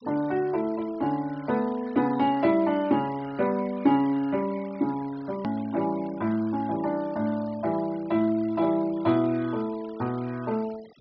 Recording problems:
low-pass filter; nothing above 5.5 kHz
noise reduction artefacts; signal-to-artefact ratio 23 dB
edit click; at 5.5 s

